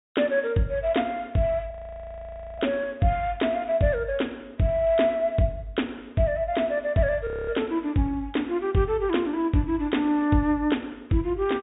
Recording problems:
low-pass filter; nothing above 4 kHz
frozen audio; at 1.5 s for 1 s and at 7.5 s

